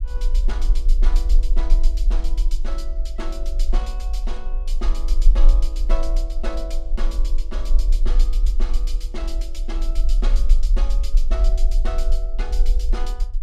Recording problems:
low-frequency rumble; below 38 Hz, strongest tone 22 Hz, SNR -13 dB

